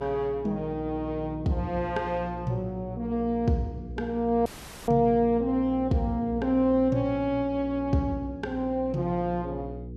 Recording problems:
hum; 60 Hz, harmonics up to 480 Hz, SNR 13 dB
dropout; at 4.5 s

